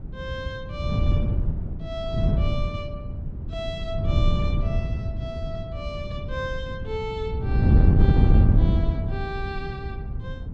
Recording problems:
wind on the microphone; below 140 Hz, SNR -9 dB

